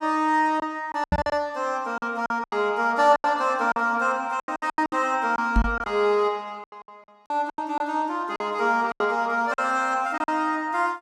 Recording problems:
lost packets; 13% of the sound replaced, filled with silence
microphone thump; at 1 s and at 5.5 s; peak +6 dB vs average level

